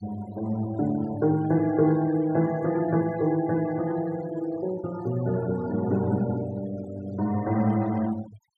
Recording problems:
denoising artefacts; signal-to-artefact ratio 19 dB

